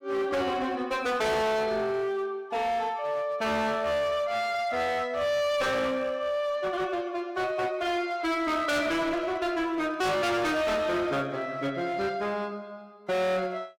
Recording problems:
distortion; hard clipping, signal-to-distortion ratio 6 dB

